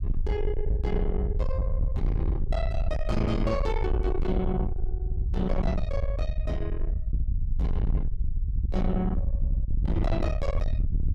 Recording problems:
distorted audio; soft clipping, signal-to-distortion ratio 6 dB
low-frequency rumble; below 76 Hz, SNR -1 dB

